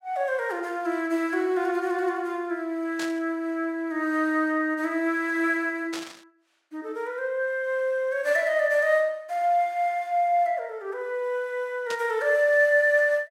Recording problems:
static burst; at 3 s, at 6 s and at 12 s; peak -6 dB vs average level

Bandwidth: 16 kHz